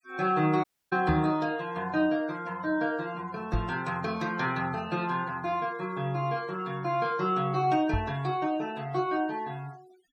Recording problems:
denoising artefacts; signal-to-artefact ratio 24 dB
audio cutting out; at 0.5 s
microphone thump; at 1 s, at 3.5 s and at 8 s; peak +3 dB vs average level

